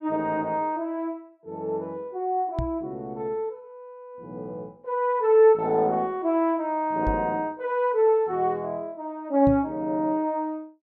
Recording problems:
knock on the microphone; at 2.5 s, at 7 s and at 9.5 s; peak -1 dB vs average level

